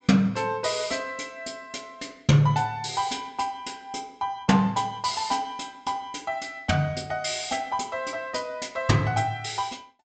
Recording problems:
low-pass filter; nothing above 8 kHz

